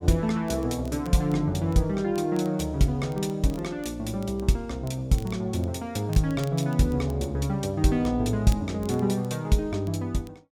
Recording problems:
crackle; vinyl, SNR 26 dB

